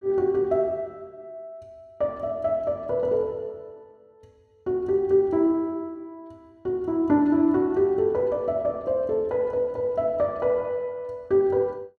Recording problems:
none

